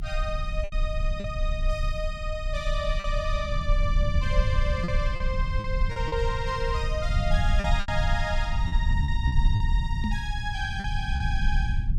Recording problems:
low-frequency rumble; below 76 Hz, strongest tone 32 Hz, SNR -3 dB
packet loss; 6% of the sound replaced, filled with repeated pitch periods
knock on the microphone; at 10 s; peak +5 dB vs average level

